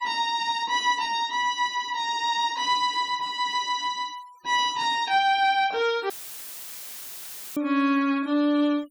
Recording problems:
denoising artefacts; signal-to-artefact ratio 24 dB
audio cutting out; at 6 s for 1.5 s; filled with static

